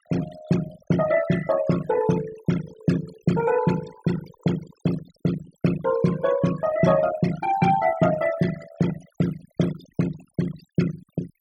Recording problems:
noise reduction artefacts; signal-to-artefact ratio 13 dB

